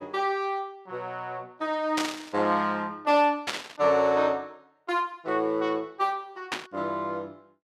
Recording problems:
burst of static; at 2 s, at 3.5 s and at 6.5 s; peak +3 dB vs average level

